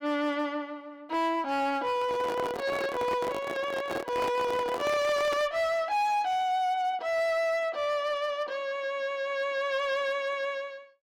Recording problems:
distortion; hard clipping, signal-to-distortion ratio 12 dB
handling noise; from 2 to 5.5 s; peak -1 dB vs average level

